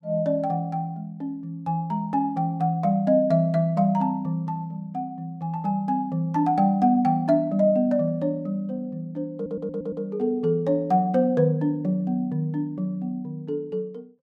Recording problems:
stutter; at 9.5 s

